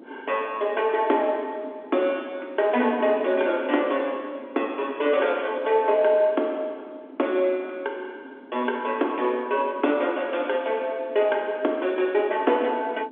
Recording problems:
phone line; 240 Hz to 3.5 kHz, G.711
wind noise; below 410 Hz, SNR 18 dB

